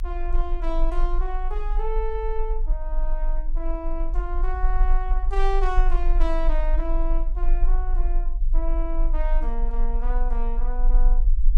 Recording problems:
rumble; below 36 Hz, strongest tone 24 Hz, SNR -6 dB

